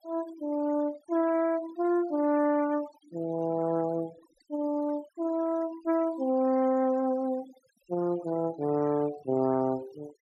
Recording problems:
noise reduction artefacts; signal-to-artefact ratio 20 dB

